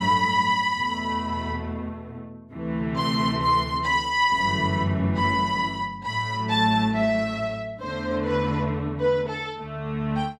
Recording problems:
none

